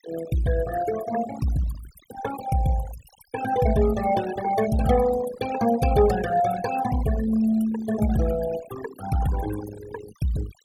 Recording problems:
noise reduction artefacts; signal-to-artefact ratio 13 dB

